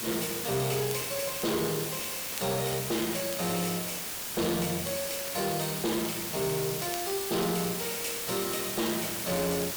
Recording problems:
distortion; hard clipping, uneven, signal-to-distortion ratio 12 dB
background hiss; slope -1 dB per octave, SNR 2 dB
crackle; vinyl, SNR 17 dB

